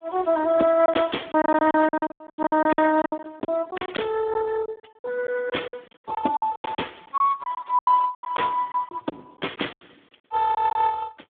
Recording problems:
phone line; 240 Hz to 3.6 kHz, Speex
packet loss; 14% of the sound replaced, filled with silence

